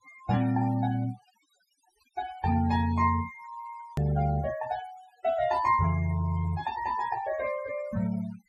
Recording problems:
noise reduction artefacts; signal-to-artefact ratio 17 dB
edit click; at 4 s

